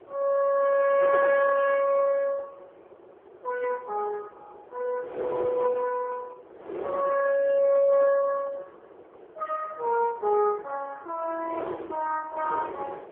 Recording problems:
telephone audio; 340 Hz to 3.3 kHz, AMR-NB
wind noise; below 650 Hz, SNR 15 dB

